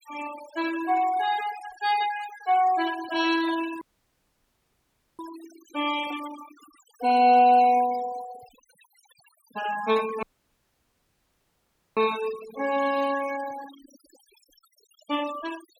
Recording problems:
denoising artefacts; signal-to-artefact ratio 15 dB
audio cutting out; at 4 s for 1.5 s and at 10 s for 1.5 s

